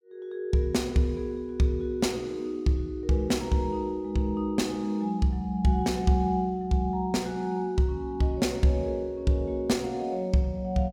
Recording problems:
none

